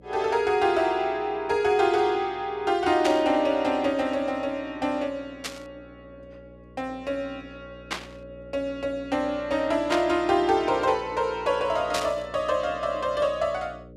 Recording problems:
hum; 60 Hz, harmonics up to 600 Hz, SNR 23 dB
burst of static; 5 times, first at 3 s; peak 0 dB vs average level

